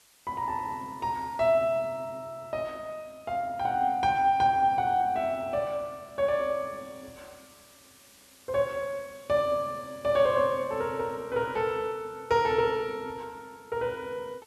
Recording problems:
hiss; slope +1 dB per octave, SNR 27 dB

